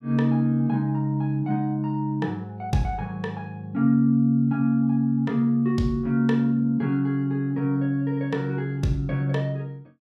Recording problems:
none

